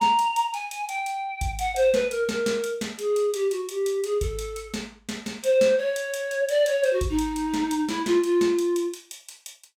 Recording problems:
none

